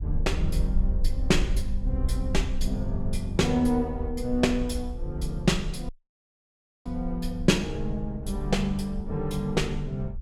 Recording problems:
low-frequency rumble; below 54 Hz, SNR 5 dB
audio cutting out; at 6 s for 1 s

